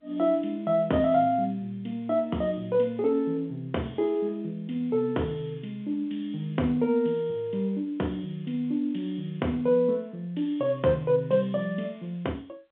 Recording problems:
phone line; 170 Hz to 3.5 kHz, G.711

